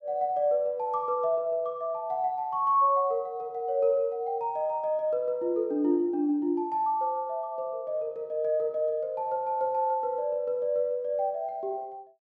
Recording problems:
none

